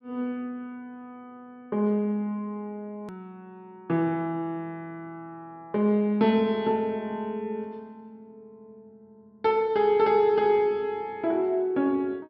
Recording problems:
low-pass filter; nothing above 5.6 kHz
click at an edit; at 3 s

